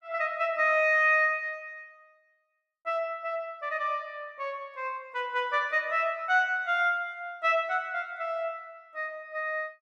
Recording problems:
none

